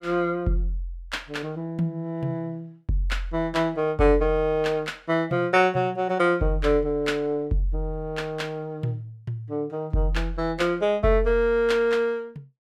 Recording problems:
none

